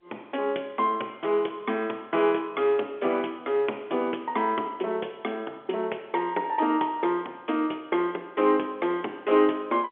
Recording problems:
phone line; 280 Hz to 3.4 kHz, G.711

